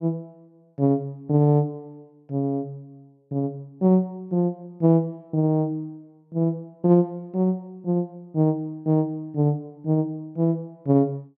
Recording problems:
none

